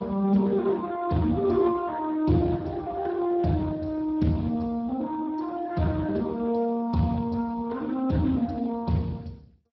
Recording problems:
lossy codec; MP2, then Speex, log-spectral distance 3 dB

